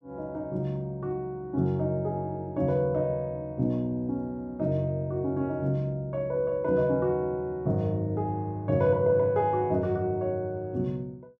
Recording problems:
none

